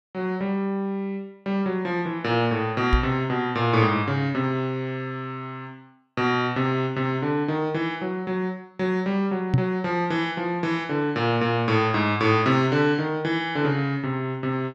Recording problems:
knock on the microphone; at 3 s and at 9.5 s; peak +7 dB vs average level

